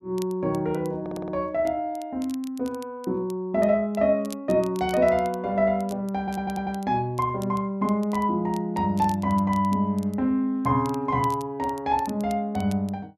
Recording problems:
crackle; vinyl, SNR 24 dB
audio stuttering; at 1 s and at 6 s

